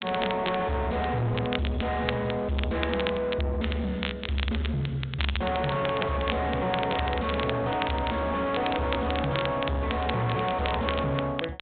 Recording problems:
low-pass filter; nothing above 4 kHz
distortion; soft clipping, signal-to-distortion ratio 6 dB
crackling; vinyl, SNR 8 dB

